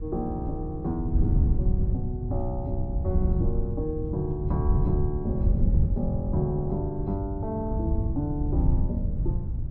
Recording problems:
wind on the microphone; below 100 Hz, SNR -3 dB

